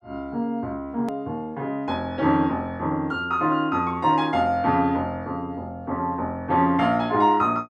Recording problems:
hard cut with a click; at 1 s

